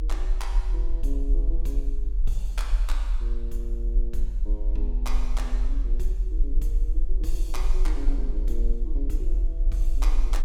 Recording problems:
low-frequency rumble; below 42 Hz, SNR -11 dB
wind noise; below 450 Hz, SNR 21 dB

